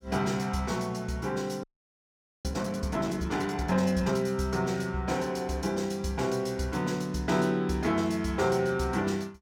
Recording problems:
audio freezing; at 1.5 s for 1 s

